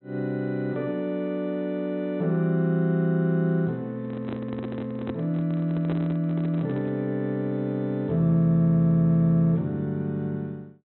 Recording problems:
treble missing; nothing above 4 kHz
handling noise; from 4 to 7 s; peak -5 dB vs average level

